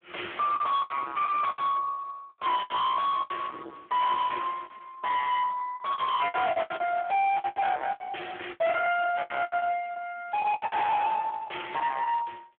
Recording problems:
phone line; 280 Hz to 3.5 kHz, Speex
distorted audio; hard clipping, signal-to-distortion ratio 6 dB
packet loss; 13% of the sound replaced, filled with the last packet

